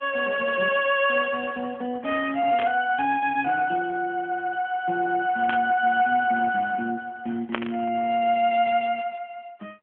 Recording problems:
telephone audio; 190 Hz to 3.3 kHz, AMR-NB
burst of static; at 2.5 s, at 5.5 s and at 7.5 s; peak -5 dB vs average level

